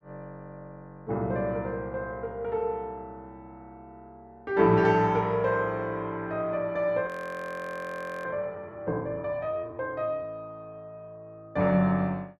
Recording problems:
audio freezing; at 7 s for 1 s

